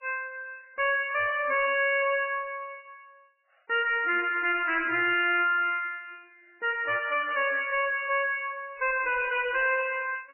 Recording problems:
lossy compression; MP3, log-spectral distance 5 dB, nothing above 2.4 kHz
distortion; soft clipping, signal-to-distortion ratio 6 dB

